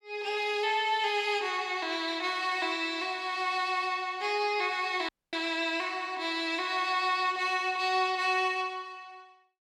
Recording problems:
dropout; at 5 s

